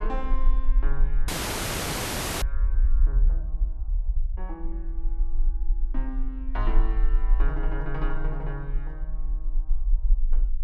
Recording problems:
low-frequency rumble; below 38 Hz, strongest tone 20 Hz, SNR -9 dB
frozen audio; at 1.5 s for 1 s

